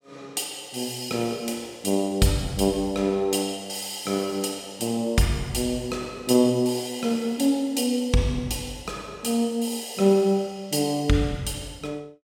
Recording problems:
none

